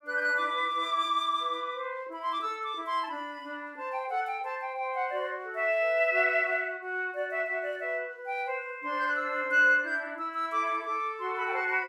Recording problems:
none

